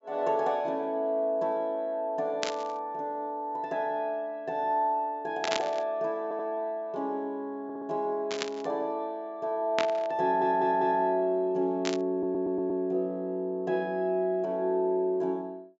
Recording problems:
treble missing; nothing above 8 kHz
static burst; 5 times, first at 2.5 s; peak +4 dB vs average level
stutter; 4 times, first at 6 s

